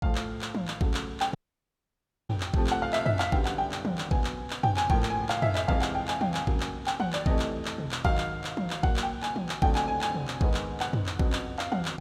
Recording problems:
audio cutting out; at 1.5 s for 1 s

